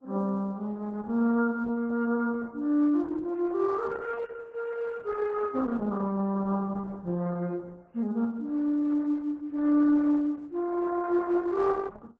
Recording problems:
lossy compression; MP3, then Opus, log-spectral distance 3 dB

